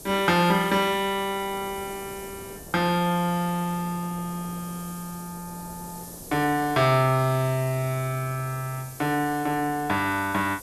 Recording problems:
hiss; SNR 16 dB
wind on the microphone; below 610 Hz, SNR 22 dB

